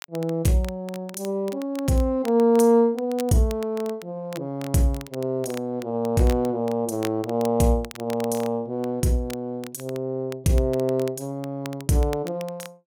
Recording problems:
crackle; vinyl, SNR 20 dB

